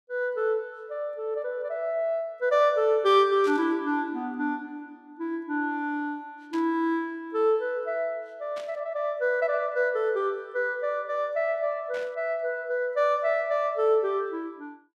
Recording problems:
static burst; 4 times, first at 3.5 s; peak -12 dB vs average level

